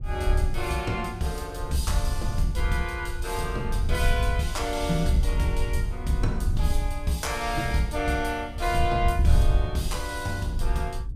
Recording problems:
wind on the microphone; below 74 Hz, SNR 1 dB

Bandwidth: 15.5 kHz